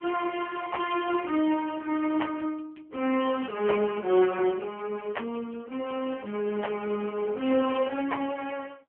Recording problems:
telephone audio; 220 Hz to 3.2 kHz, AMR-NB

